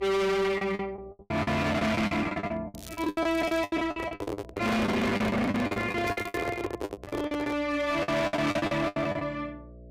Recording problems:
distortion; hard clipping, signal-to-distortion ratio 7 dB
hum; 60 Hz, harmonics up to 660 Hz, SNR 22 dB
lost packets; 20% of the sound replaced, filled with the last packet
crackle; at 2.5 s and at 6 s; loose cable, SNR 19 dB
handling noise; from 4 to 7.5 s; peak +1 dB vs average level

